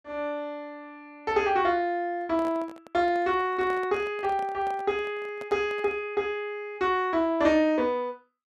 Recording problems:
handling noise; from 2 to 6 s; peak -10 dB vs average level

